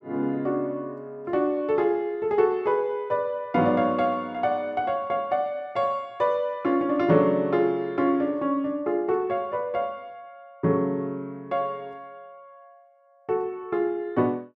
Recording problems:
none

